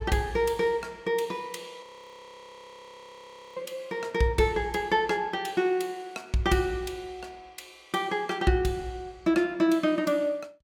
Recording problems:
frozen audio; at 2 s for 1.5 s

